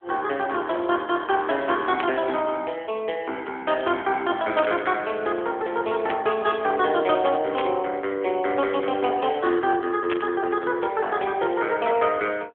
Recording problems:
telephone audio; 240 Hz to 3.4 kHz, AMR-NB
static burst; 5 times, first at 2 s; peak -1 dB vs average level

